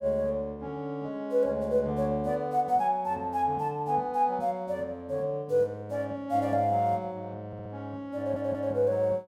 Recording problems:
audio stuttering; at 7.5 s and at 8 s

